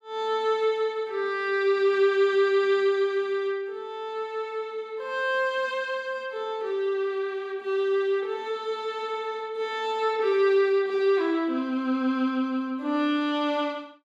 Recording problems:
none

